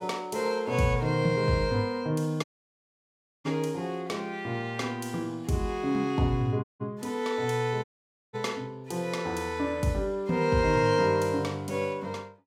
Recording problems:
audio cutting out; at 2.5 s for 1 s, at 6.5 s and at 8 s

